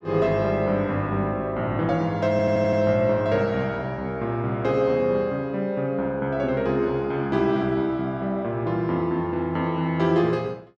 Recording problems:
stutter; at 2.5 s

